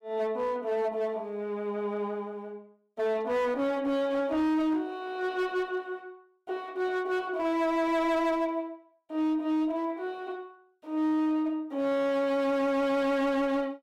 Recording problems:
distorted audio; hard clipping, signal-to-distortion ratio 10 dB

